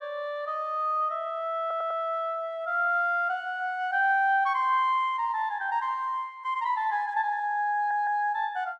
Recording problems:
stutter; at 1.5 s and at 8 s

